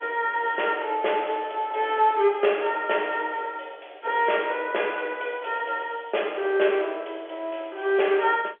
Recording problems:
phone line; 340 Hz to 3.4 kHz, G.711

